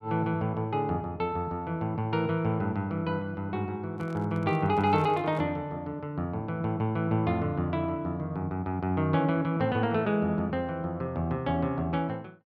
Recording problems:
microphone handling noise; from 4 to 5.5 s; peak -11 dB vs average level

